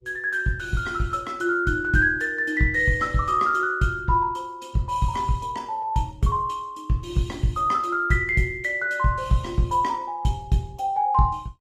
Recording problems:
lossy codec; Opus, log-spectral distance 2 dB, nothing above 17.7 kHz

